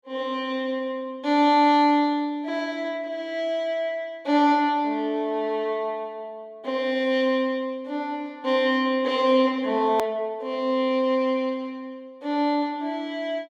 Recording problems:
hard cut with a click; at 10 s

